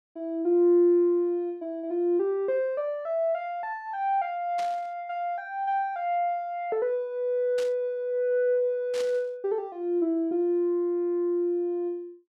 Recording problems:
burst of static; at 4.5 s, at 7.5 s and at 9 s; peak -9 dB vs average level

